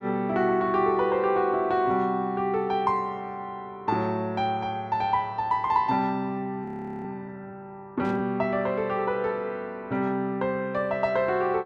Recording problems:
audio freezing; at 6.5 s
static burst; at 8 s; peak -16 dB vs average level

